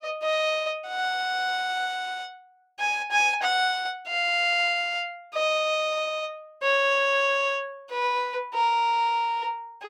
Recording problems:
none

